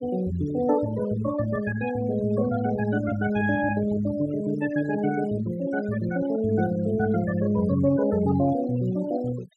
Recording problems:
denoising artefacts; signal-to-artefact ratio 17 dB

